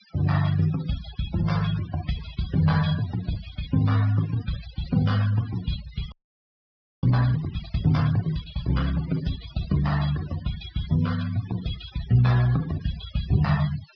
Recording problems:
treble cut off; nothing above 5.5 kHz
denoising artefacts; signal-to-artefact ratio 15 dB
frozen audio; at 6 s for 1 s

